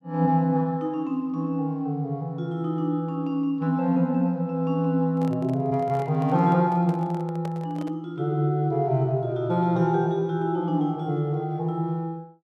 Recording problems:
microphone handling noise; from 5 to 8 s; peak -9 dB vs average level

